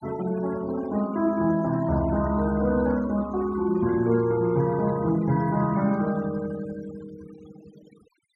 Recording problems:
denoising artefacts; signal-to-artefact ratio 19 dB

